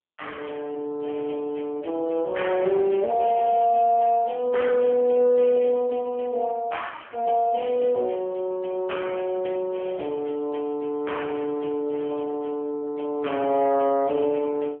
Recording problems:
telephone audio; 220 Hz to 3.3 kHz, AMR-NB

